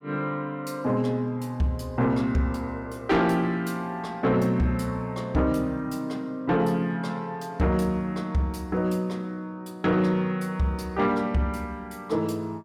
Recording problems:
distorted audio; soft clipping, signal-to-distortion ratio 12 dB

